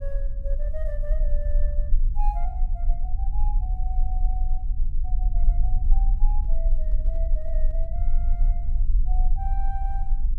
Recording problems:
low-frequency rumble; below 38 Hz, strongest tone 24 Hz, SNR -15 dB
handling noise; from 6 to 8 s; peak -10 dB vs average level

